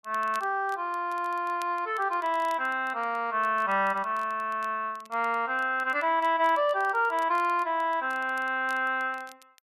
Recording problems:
crackle; vinyl, SNR 27 dB

